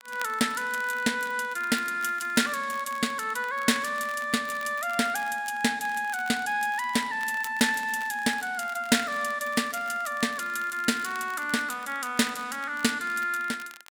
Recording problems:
crackling; vinyl, SNR 20 dB

